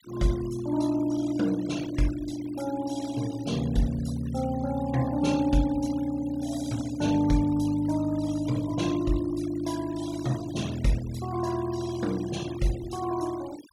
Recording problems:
denoising artefacts; signal-to-artefact ratio 18 dB

